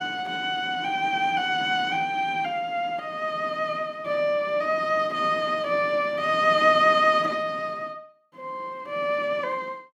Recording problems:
none

